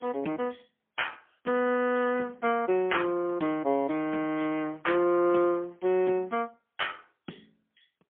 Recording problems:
phone line; 190 Hz to 3.3 kHz, AMR-NB, then MP3

